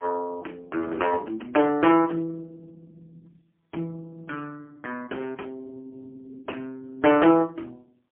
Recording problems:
telephone audio; 240 Hz to 3.1 kHz, AMR-NB, then MP3

